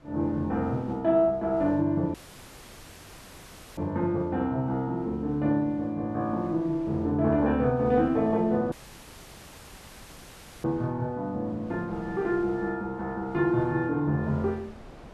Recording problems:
wind on the microphone; below 760 Hz, SNR 23 dB
audio cutting out; at 2 s for 1.5 s and at 8.5 s for 2 s

